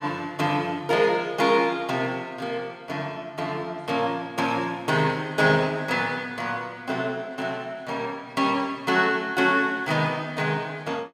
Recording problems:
none

